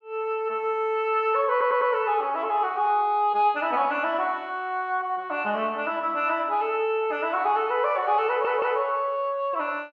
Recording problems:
audio stuttering; at 1.5 s and at 8.5 s

